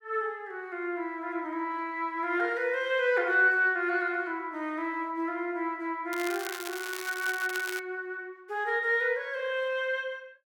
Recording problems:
crackling; from 6 to 8 s; loose cable, SNR 10 dB

